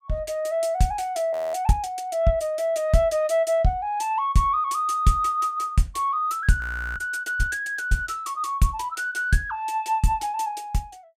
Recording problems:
frozen audio; at 1.5 s and at 6.5 s

